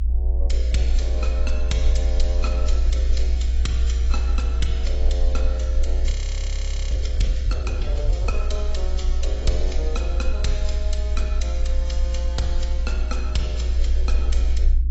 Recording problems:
lossy compression; AAC, log-spectral distance 2 dB, nothing above 7.8 kHz
electrical hum; 50 Hz, harmonics up to 350 Hz, SNR 13 dB
low-frequency rumble; below 60 Hz, SNR -9 dB
audio freezing; at 6 s for 1 s

